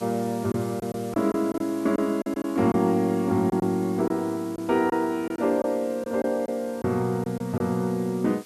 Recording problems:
hiss; slope +1 dB per octave, SNR 22 dB
lost packets; 7% of the sound replaced, filled with silence

